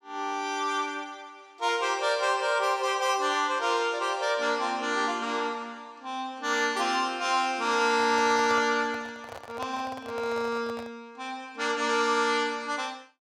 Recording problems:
handling noise; from 8 to 11 s; peak -6 dB vs average level

